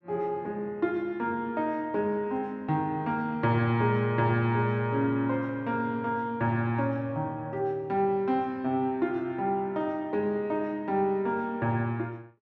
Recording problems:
none

